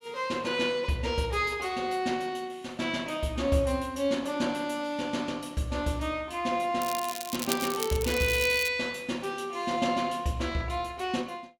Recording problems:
crackling; from 7 to 8.5 s; loose cable, SNR 6 dB

